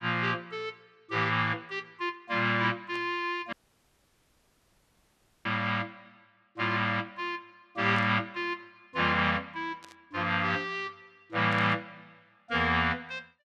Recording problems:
static burst; 4 times, first at 3 s; peak -13 dB vs average level
dropout; at 3.5 s for 2 s

